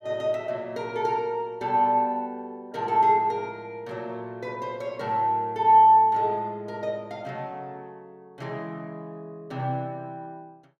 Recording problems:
none

